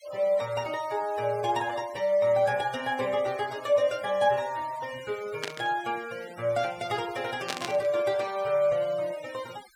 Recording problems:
denoising artefacts; signal-to-artefact ratio 19 dB
burst of static; at 5.5 s and at 7.5 s; peak 0 dB vs average level

